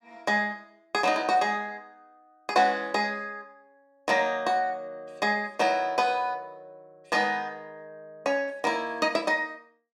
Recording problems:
none

